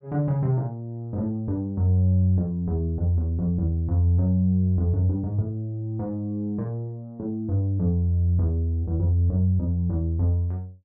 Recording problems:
none

